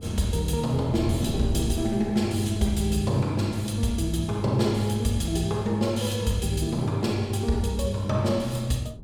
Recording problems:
wind noise; below 250 Hz, SNR 13 dB

